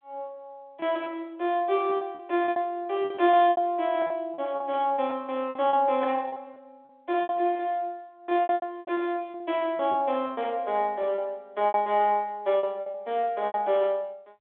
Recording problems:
phone line; 280 Hz to 3.8 kHz, G.726
lost packets; 13% of the sound replaced, filled with repeated pitch periods

